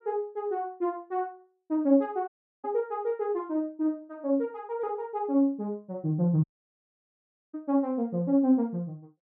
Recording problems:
audio cutting out; at 2.5 s and at 6.5 s for 1 s

